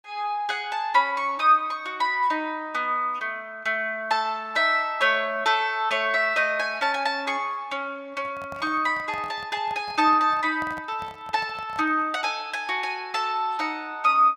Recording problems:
handling noise; from 8 to 12 s; peak -11 dB vs average level

